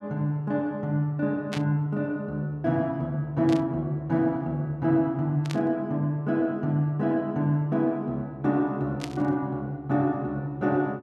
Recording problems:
static burst; 4 times, first at 1.5 s; peak -4 dB vs average level

